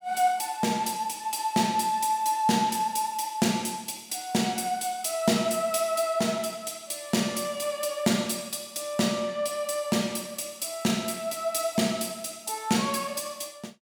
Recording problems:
none

